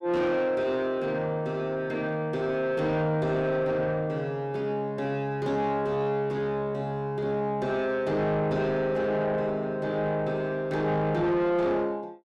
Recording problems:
distortion; soft clipping, signal-to-distortion ratio 10 dB

